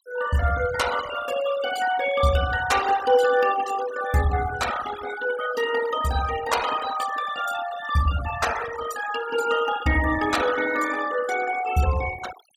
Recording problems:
denoising artefacts; signal-to-artefact ratio 11 dB

